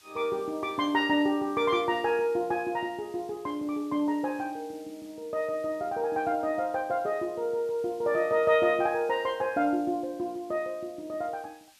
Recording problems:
background hiss; slope +3 dB per octave, SNR 27 dB

